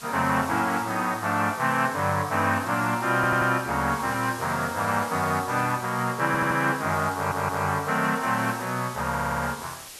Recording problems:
background hiss; slope 0 dB per octave, SNR 15 dB
stutter; 4 times, first at 3 s

